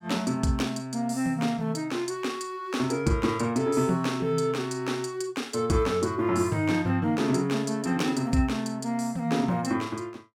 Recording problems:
none

